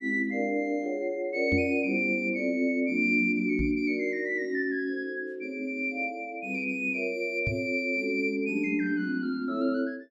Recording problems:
microphone bump; at 1.5 s, at 3.5 s and at 7.5 s; peak +1 dB vs average level

